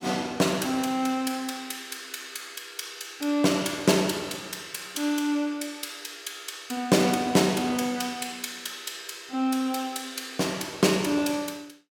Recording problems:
none

